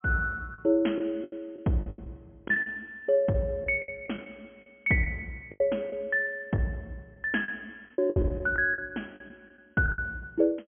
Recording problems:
treble cut off; nothing above 3.3 kHz
lost packets; 12% of the sound replaced, filled with the last packet

